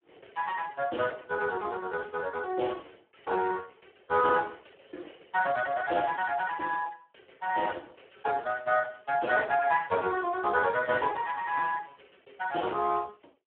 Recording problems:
telephone audio; 280 Hz to 2.8 kHz, Speex

